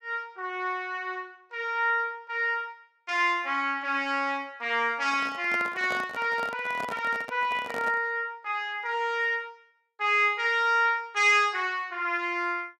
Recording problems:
handling noise; from 5 to 8 s; peak -5 dB vs average level

